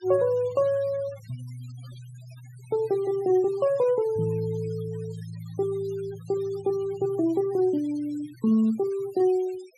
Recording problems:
denoising artefacts; signal-to-artefact ratio 24 dB

